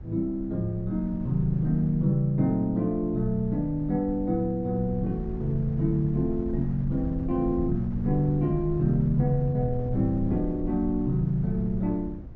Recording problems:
treble missing; nothing above 7 kHz
wind on the microphone; below 110 Hz, SNR 11 dB

